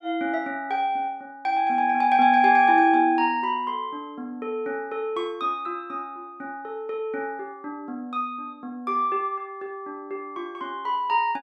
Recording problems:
none

